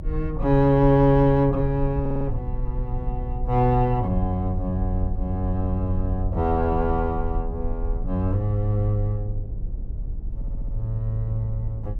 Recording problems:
low-frequency rumble; below 58 Hz, strongest tone 34 Hz, SNR 8 dB
stutter; at 2 s and at 10 s

